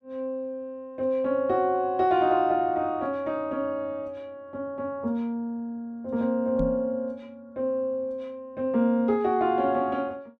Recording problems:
knock on the microphone; at 6.5 s; peak -1 dB vs average level

